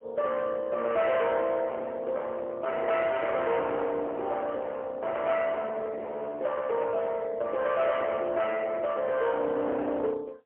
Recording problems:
telephone audio; 690 Hz to 2 kHz, AMR-NB, then MP3
distorted audio; hard clipping, signal-to-distortion ratio 9 dB

